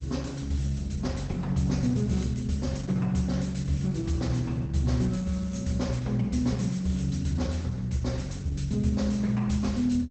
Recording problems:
lossy codec; Opus, log-spectral distance 4 dB, nothing above 8 kHz

